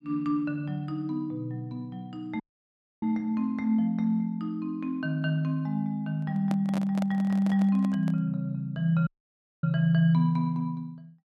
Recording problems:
dropout; at 2.5 s for 0.5 s and at 9 s for 0.5 s
handling noise; from 6 to 8 s; peak -4 dB vs average level

